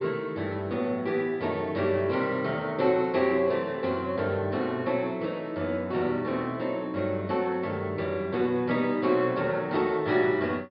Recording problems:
low-pass filter; nothing above 5.2 kHz

